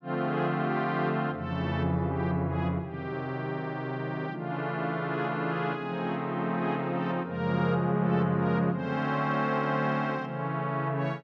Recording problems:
none

